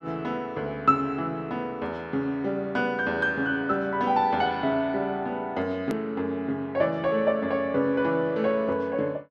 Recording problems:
hard cut with a click; at 6 s

